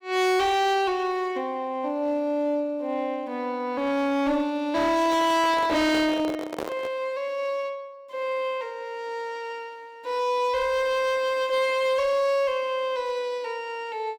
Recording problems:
distorted audio; hard clipping, uneven, signal-to-distortion ratio 10 dB
microphone handling noise; from 5 to 7 s; peak -2 dB vs average level

